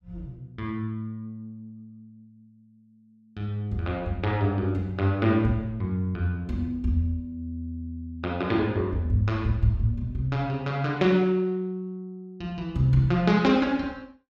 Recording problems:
none

